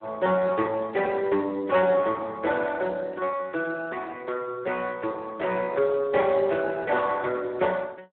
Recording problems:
telephone audio; 260 Hz to 2.5 kHz, Speex

